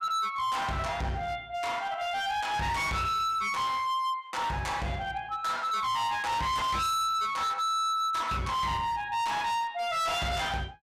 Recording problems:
distorted audio; hard clipping, signal-to-distortion ratio 7 dB

